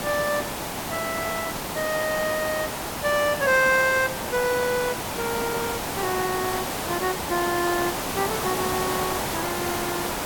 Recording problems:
hiss; SNR 2 dB

